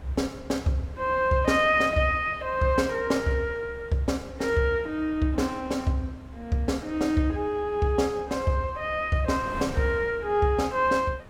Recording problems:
wind on the microphone; below 640 Hz, SNR 20 dB

